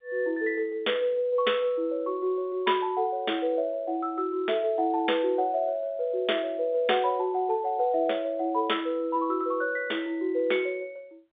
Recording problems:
telephone audio; 280 Hz to 3.6 kHz, G.711

